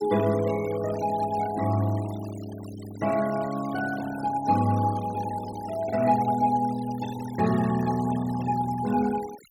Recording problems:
denoising artefacts; signal-to-artefact ratio 17 dB

